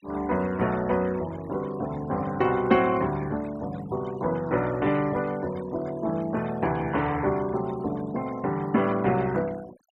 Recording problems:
noise reduction artefacts; signal-to-artefact ratio 21 dB

